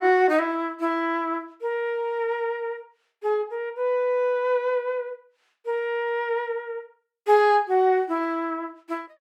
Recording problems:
none

